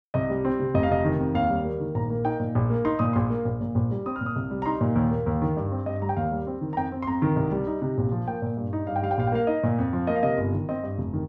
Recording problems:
none

